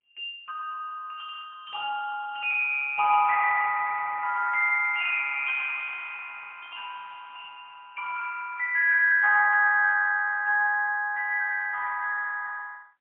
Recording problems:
telephone audio; 990 Hz to 2 kHz, AMR-NB, then MP3

